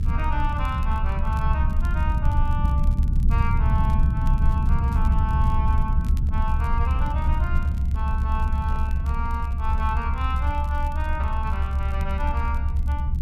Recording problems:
low-frequency rumble; below 76 Hz, SNR -8 dB
crackle; vinyl, SNR 23 dB
handling noise; from 6 to 10 s; peak -11 dB vs average level

